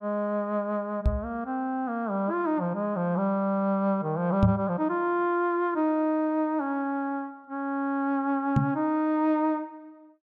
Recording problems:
knock on the microphone; at 1 s, at 4.5 s and at 8.5 s; peak +8 dB vs average level

